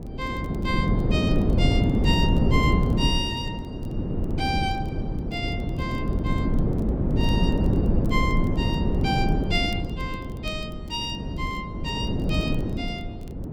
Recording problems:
wind noise; below 260 Hz, SNR -5 dB
crackling; vinyl, SNR 27 dB

